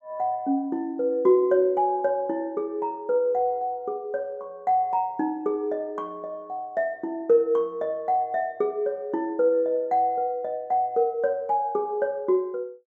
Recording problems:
none

